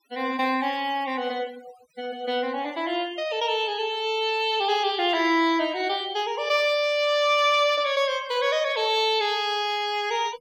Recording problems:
denoising artefacts; signal-to-artefact ratio 21 dB

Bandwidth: 17 kHz